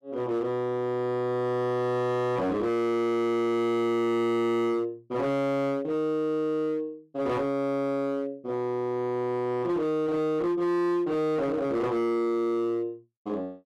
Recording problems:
distortion; hard clipping, signal-to-distortion ratio 7 dB

